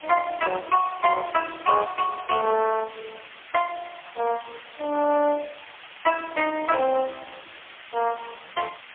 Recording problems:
telephone audio; 370 Hz to 3.3 kHz, AMR-NB, then MP3
background hiss; SNR 18 dB

